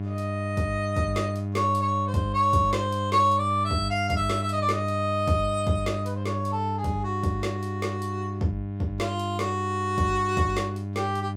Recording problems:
hum; 50 Hz, harmonics up to 700 Hz, SNR 5 dB

